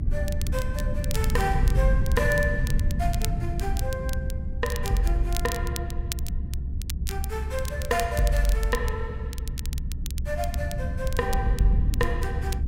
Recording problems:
rumble; below 100 Hz, SNR 0 dB
crackling; vinyl, SNR 11 dB

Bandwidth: 16 kHz